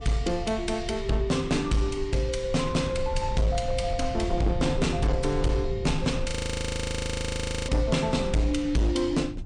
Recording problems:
codec artefacts; MP3, log-spectral distance 2 dB, nothing above 18.9 kHz
distorted audio; hard clipping, signal-to-distortion ratio 11 dB
low-frequency rumble; below 98 Hz, SNR 8 dB
audio freezing; at 6.5 s for 1.5 s

